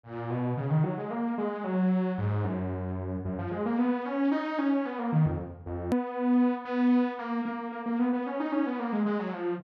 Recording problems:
hard cut with a click; at 6 s

